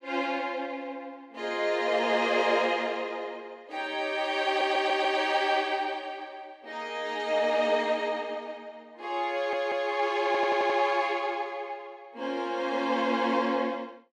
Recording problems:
stutter; at 4.5 s, at 9.5 s and at 10 s

